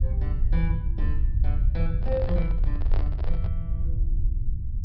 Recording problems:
low-pass filter; nothing above 5.5 kHz
rumble; below 68 Hz, SNR -8 dB
microphone handling noise; from 2 to 3.5 s; peak 0 dB vs average level

